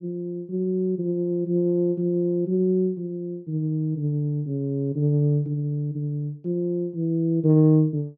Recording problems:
none

